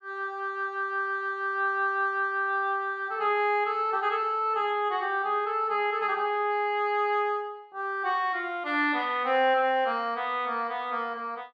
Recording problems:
none

